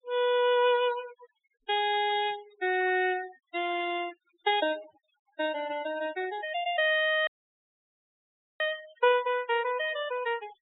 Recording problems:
low-pass filter; nothing above 4 kHz
noise reduction artefacts; signal-to-artefact ratio 18 dB
dropout; at 7.5 s for 1.5 s

